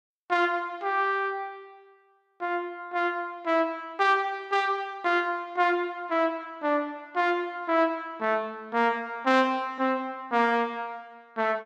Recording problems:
none

